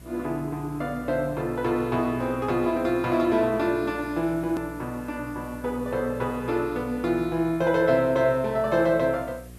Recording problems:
hum; 60 Hz, harmonics up to 720 Hz, SNR 19 dB
background hiss; slope -1 dB per octave, SNR 27 dB
click at an edit; at 4.5 s

